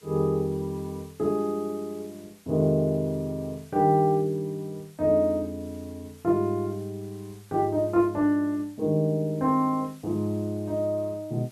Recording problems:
background hiss; slope 0 dB per octave, SNR 28 dB

